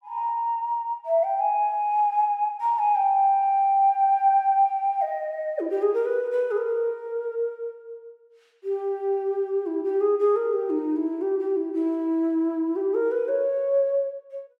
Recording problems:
none

